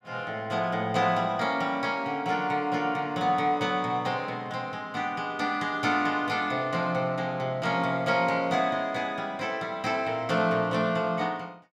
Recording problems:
none

